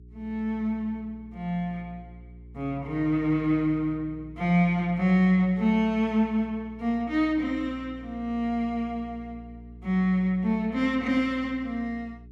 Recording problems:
hum; 60 Hz, harmonics up to 420 Hz, SNR 20 dB

